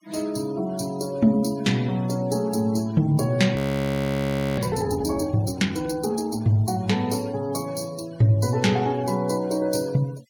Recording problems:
denoising artefacts; signal-to-artefact ratio 24 dB
frozen audio; at 3.5 s for 1 s

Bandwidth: 17.5 kHz